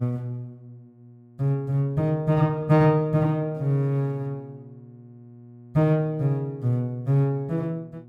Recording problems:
hum; 60 Hz, harmonics up to 720 Hz, SNR 25 dB

